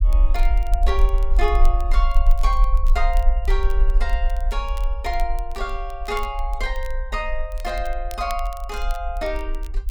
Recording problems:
low-frequency rumble; below 44 Hz, SNR -4 dB
crackling; vinyl, SNR 19 dB

